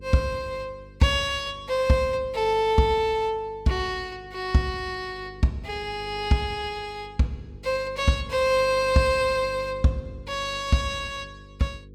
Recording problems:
hum; 50 Hz, harmonics up to 500 Hz, SNR 20 dB

